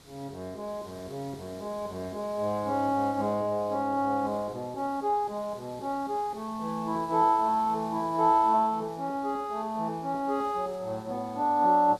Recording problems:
hiss; SNR 23 dB

